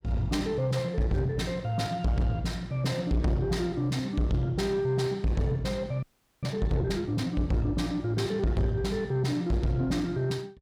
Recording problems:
distortion; soft clipping, signal-to-distortion ratio 8 dB
audio freezing; at 6 s

